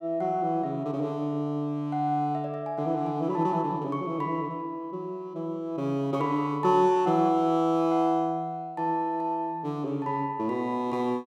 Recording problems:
none

